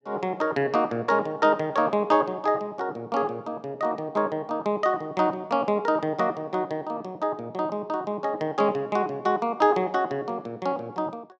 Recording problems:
none

